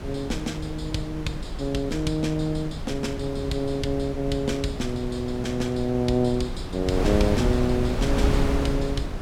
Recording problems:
wind noise; below 260 Hz, SNR 4 dB

